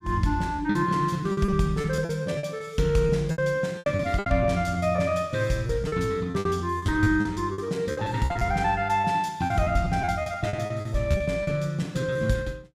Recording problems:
packet loss; 16% of the sound replaced, filled with repeated pitch periods

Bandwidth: 15.5 kHz